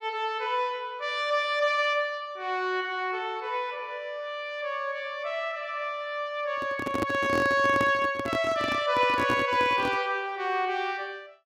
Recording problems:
handling noise; from 6.5 to 10 s; peak +2 dB vs average level

